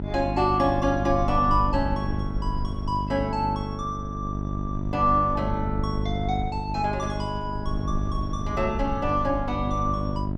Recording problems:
electrical hum; 50 Hz, harmonics up to 700 Hz, SNR 4 dB
low-frequency rumble; below 74 Hz, SNR 9 dB

